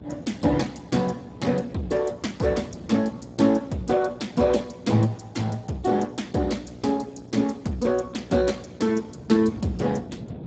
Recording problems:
codec artefacts; Speex, log-spectral distance 5 dB, nothing above 7.6 kHz
hum; 60 Hz, harmonics up to 900 Hz, SNR 20 dB
wind noise; below 310 Hz, SNR 19 dB

